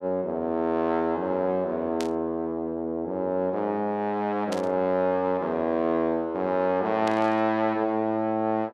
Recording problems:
burst of static; at 2 s, at 4.5 s and at 7 s; peak -5 dB vs average level

